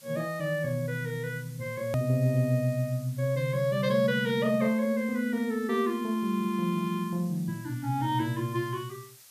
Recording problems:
hiss; slope +2 dB per octave, SNR 22 dB
click at an edit; at 2 s

